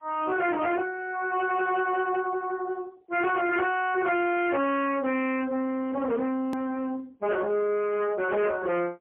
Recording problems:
phone line; 540 Hz to 3.4 kHz, AMR-NB, then MP3
distorted audio; hard clipping, uneven, signal-to-distortion ratio 8 dB
click at an edit; at 6.5 s

